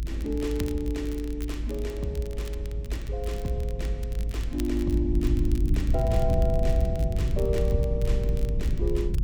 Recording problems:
rumble; below 84 Hz, strongest tone 52 Hz, SNR -2 dB
crackle; vinyl, SNR 17 dB

